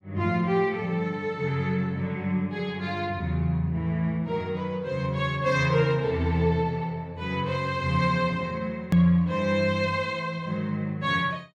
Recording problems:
edit click; at 9 s

